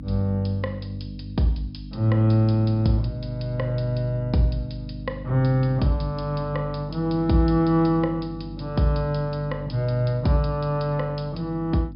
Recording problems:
treble missing; nothing above 5.5 kHz
hum; 50 Hz, harmonics up to 300 Hz, SNR 13 dB

